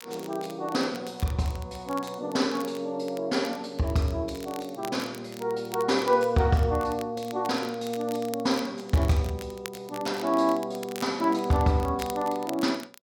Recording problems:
crackle; vinyl, SNR 18 dB

